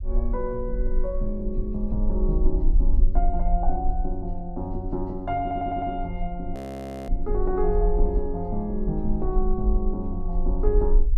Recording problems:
low-frequency rumble; below 42 Hz, strongest tone 22 Hz, SNR 0 dB
stutter; at 5.5 s
frozen audio; at 6.5 s for 0.5 s

